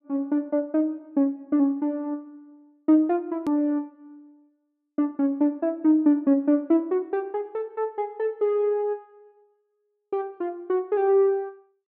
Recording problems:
hard cut with a click; at 3.5 s

